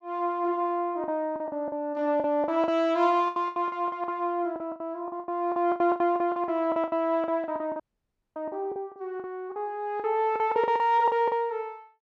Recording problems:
low-pass filter; nothing above 8 kHz
lost packets; 17% of the sound replaced, filled with the last packet
dropout; at 8 s for 0.5 s

